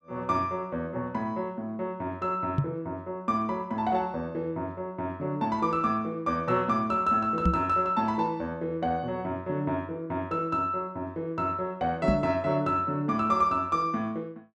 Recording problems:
microphone thump; at 2.5 s, at 7.5 s and at 12 s; peak +7 dB vs average level

